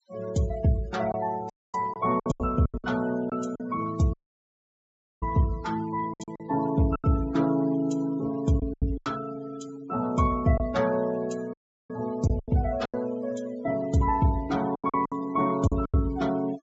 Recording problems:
low-pass filter; nothing above 7.7 kHz
noise reduction artefacts; signal-to-artefact ratio 19 dB
packet loss; 9% of the sound replaced, filled with silence
audio cutting out; at 1.5 s, at 4 s for 1 s and at 12 s

